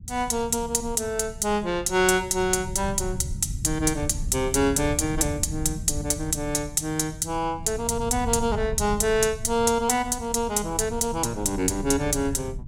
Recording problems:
low-frequency rumble; below 120 Hz, SNR 12 dB

